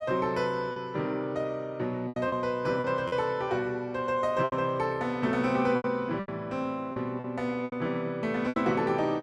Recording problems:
lost packets; 8% of the sound replaced, filled with repeated pitch periods

